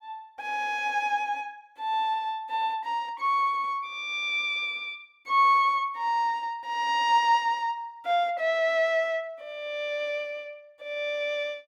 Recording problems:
none

